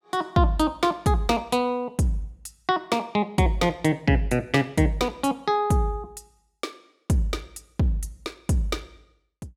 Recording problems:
none

